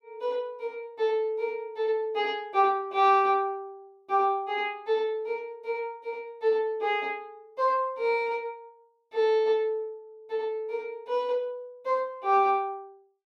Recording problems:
none

